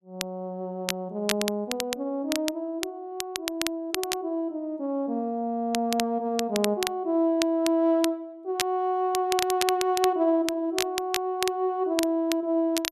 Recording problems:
crackling; vinyl, SNR 6 dB

